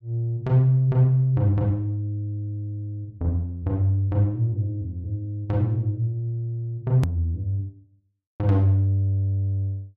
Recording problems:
hard cut with a click; at 7 s

